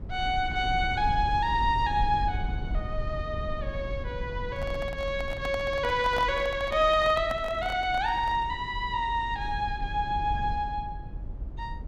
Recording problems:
low-frequency rumble; below 86 Hz, SNR 9 dB
handling noise; from 4.5 to 8.5 s; peak -2 dB vs average level

